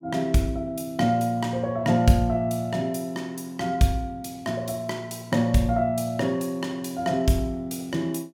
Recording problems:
none

